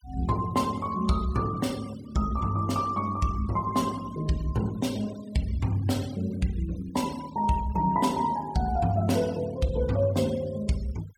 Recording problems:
noise reduction artefacts; signal-to-artefact ratio 19 dB

